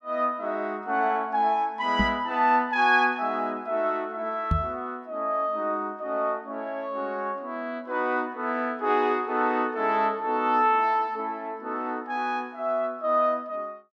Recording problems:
microphone bump; at 2 s and at 4.5 s; peak +4 dB vs average level

